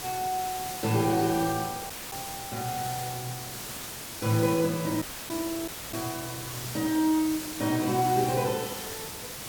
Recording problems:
hiss; slope -1 dB per octave, SNR 7 dB
wind noise; below 650 Hz, SNR 24 dB
audio cutting out; at 2 s, at 5 s and at 5.5 s

